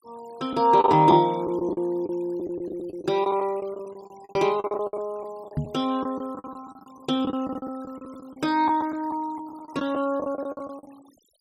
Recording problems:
noise reduction artefacts; signal-to-artefact ratio 26 dB
packet loss; 16% of the sound replaced, filled with the last packet
microphone bump; at 5.5 s; peak +1 dB vs average level

